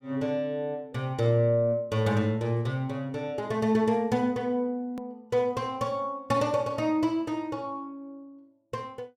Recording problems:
hard cut with a click; at 5 s

